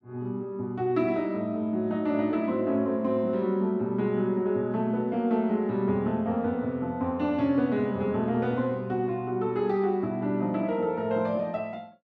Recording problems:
none

